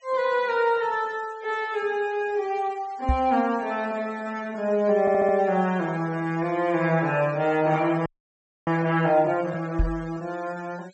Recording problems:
treble cut off; nothing above 8 kHz
denoising artefacts; signal-to-artefact ratio 24 dB
microphone thump; at 3 s and at 10 s; peak +4 dB vs average level
stutter; at 5 s
audio freezing; at 8 s for 0.5 s

